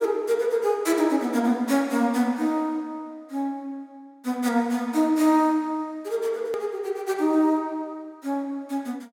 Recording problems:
edit click; at 6.5 s

